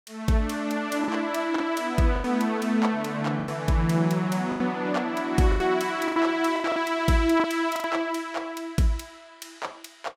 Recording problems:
lost packets; 8% of the sound replaced, filled with the last packet

